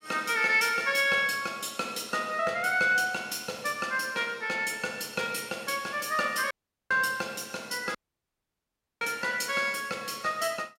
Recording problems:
dropout; at 6.5 s and at 8 s for 1 s

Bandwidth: 16 kHz